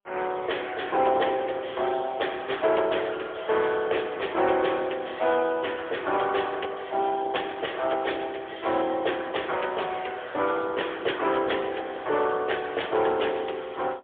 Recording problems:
telephone audio; 320 Hz to 3.4 kHz, AMR-NB, then MP3

